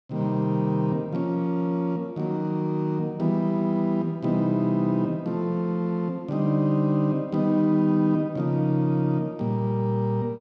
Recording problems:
none

